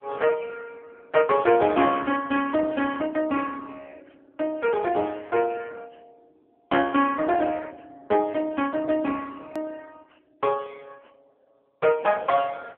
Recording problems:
phone line; 220 Hz to 3.3 kHz, AMR-NB
edit click; at 9.5 s

